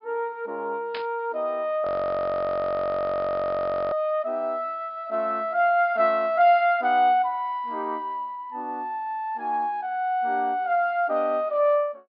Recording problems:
low-pass filter; nothing above 5.5 kHz
burst of static; at 1 s; peak -6 dB vs average level
audio freezing; at 2 s for 2 s

